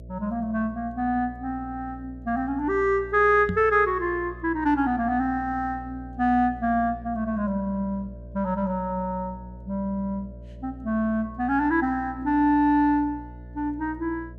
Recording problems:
hum; 60 Hz, harmonics up to 660 Hz, SNR 17 dB
microphone thump; at 3.5 s; peak -1 dB vs average level

